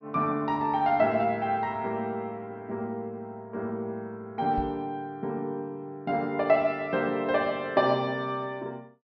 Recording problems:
treble missing; nothing above 5.7 kHz
microphone bump; at 4.5 s; peak -4 dB vs average level

